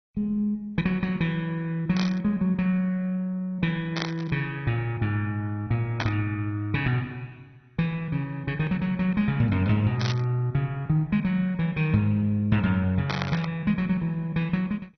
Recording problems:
codec artefacts; MP2, log-spectral distance 2 dB, nothing above 5.5 kHz
burst of static; 5 times, first at 2 s; peak +1 dB vs average level

